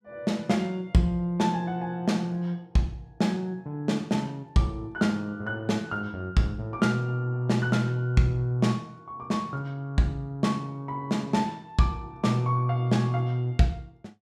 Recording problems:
none

